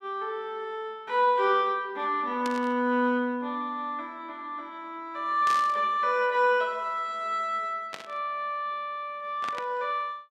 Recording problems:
static burst; 4 times, first at 2.5 s; peak -5 dB vs average level

